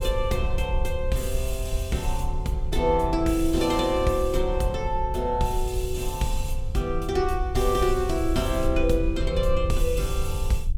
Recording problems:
rumble; below 64 Hz, SNR 5 dB

